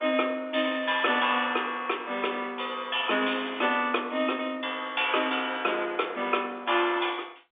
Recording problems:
phone line; 240 Hz to 3.6 kHz, G.711

